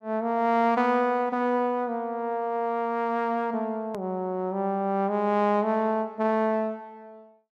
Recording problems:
hard cut with a click; at 4 s

